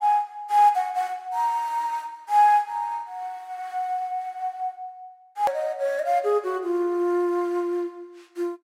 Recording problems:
hard cut with a click; at 5.5 s

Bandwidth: 16 kHz